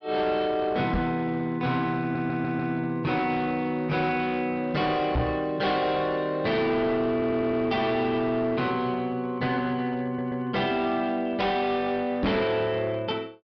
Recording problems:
treble missing; nothing above 5.5 kHz
distortion; hard clipping, uneven, signal-to-distortion ratio 11 dB
microphone bump; at 1 s, at 5 s and at 12 s; peak +4 dB vs average level
stutter; at 2 s, at 7 s and at 10 s

